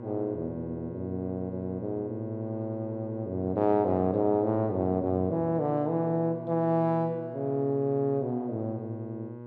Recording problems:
electrical hum; 60 Hz, harmonics up to 1.4 kHz, SNR 13 dB

